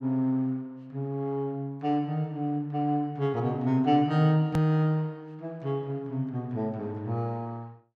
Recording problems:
edit click; at 4.5 s

